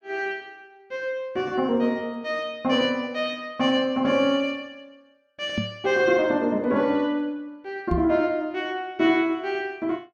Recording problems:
microphone bump; at 5.5 s and at 8 s; peak +1 dB vs average level

